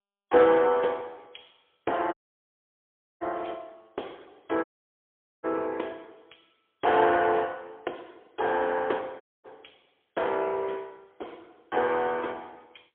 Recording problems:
phone line; 300 Hz to 3.4 kHz, AMR-NB, then MP3
audio cutting out; at 2 s for 1 s, at 4.5 s for 1 s and at 9 s

